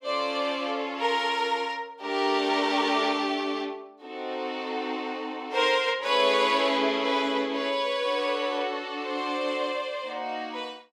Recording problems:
none

